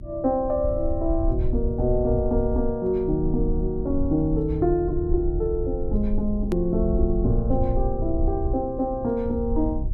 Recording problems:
hum; 60 Hz, harmonics up to 360 Hz, SNR 21 dB
rumble; below 66 Hz, SNR 5 dB
edit click; at 6.5 s

